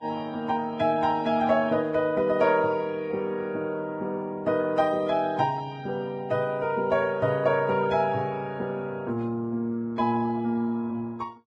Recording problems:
lossy codec; Vorbis, log-spectral distance 2 dB

